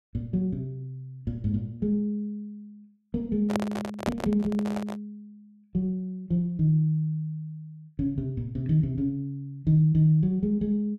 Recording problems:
handling noise; from 3.5 to 5 s; peak +2 dB vs average level

